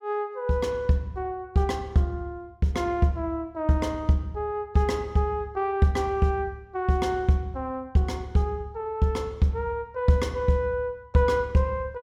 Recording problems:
none

